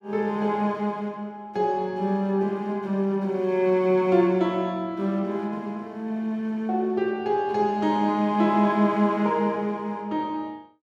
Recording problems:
none

